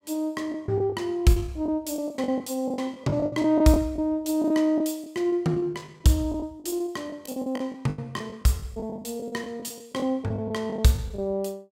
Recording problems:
lost packets; 15% of the sound replaced, filled with the last packet

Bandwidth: 16 kHz